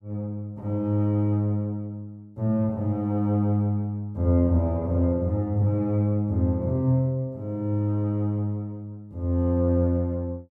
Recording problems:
none

